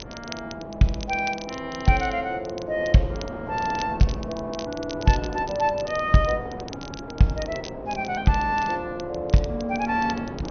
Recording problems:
treble cut off; nothing above 6.2 kHz
wind on the microphone; below 620 Hz, SNR 13 dB
crackle; vinyl, SNR 17 dB

